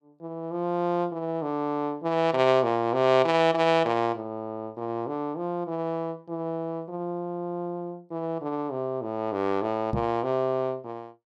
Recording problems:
microphone bump; at 10 s; peak +2 dB vs average level

